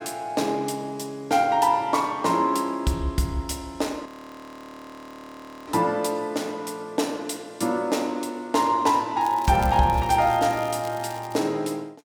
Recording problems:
frozen audio; at 4 s for 1.5 s
crackle; from 9 to 11 s; loose cable, SNR 20 dB

